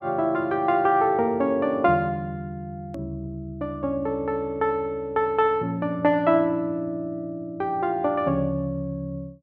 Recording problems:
edit click; at 3 s

